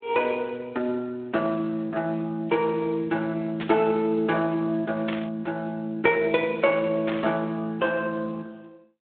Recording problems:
telephone audio; 260 Hz to 3.7 kHz, Speex
static burst; at 3.5 s, at 5 s and at 7 s; peak -3 dB vs average level

